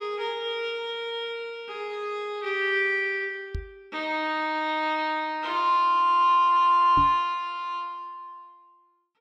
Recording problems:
knock on the microphone; at 3.5 s and at 7 s; peak -3 dB vs average level

